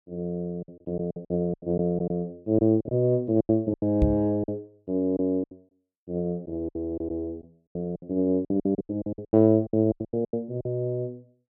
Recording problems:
packet loss; 16% of the sound replaced, filled with silence
microphone thump; at 4 s; peak +7 dB vs average level

